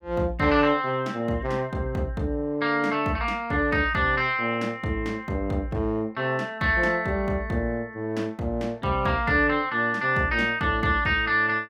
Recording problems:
none

